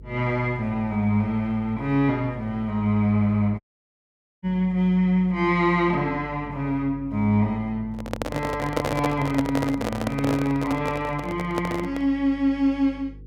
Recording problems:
hum; 50 Hz, harmonics up to 500 Hz, SNR 19 dB
audio cutting out; at 3.5 s for 1 s
handling noise; from 8 to 12 s; peak +3 dB vs average level

